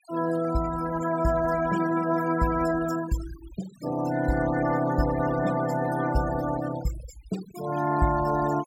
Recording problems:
noise reduction artefacts; signal-to-artefact ratio 15 dB

